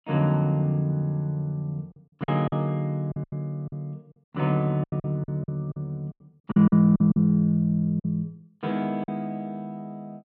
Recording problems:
packet loss; 9% of the sound replaced, filled with silence

